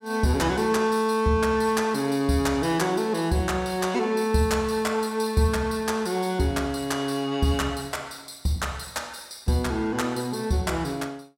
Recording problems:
none

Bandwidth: 16.5 kHz